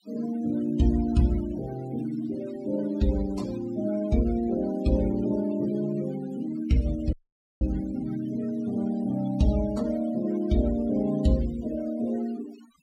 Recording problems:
noise reduction artefacts; signal-to-artefact ratio 18 dB
dropout; at 7 s

